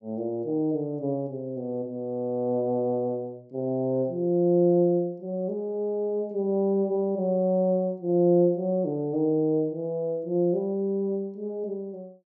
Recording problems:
treble missing; nothing above 8 kHz

